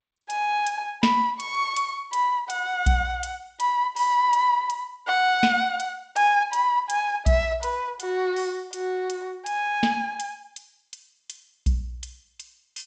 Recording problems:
lossy compression; G.722, log-spectral distance 2 dB, nothing above 7.8 kHz

